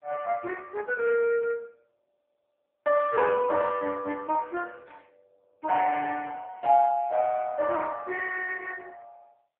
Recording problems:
phone line; 320 Hz to 3 kHz, AMR-NB

